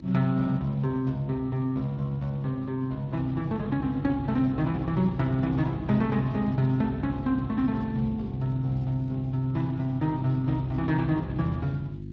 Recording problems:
lossy codec; Speex, log-spectral distance 2 dB
mains hum; 50 Hz, harmonics up to 350 Hz, SNR 12 dB

